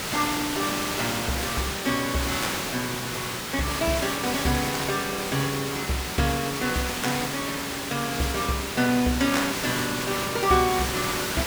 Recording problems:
background hiss; slope -2 dB per octave, SNR 1 dB

